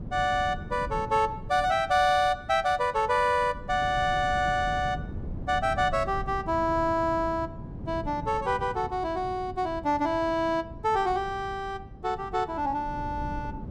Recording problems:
wind on the microphone; below 190 Hz, SNR 13 dB

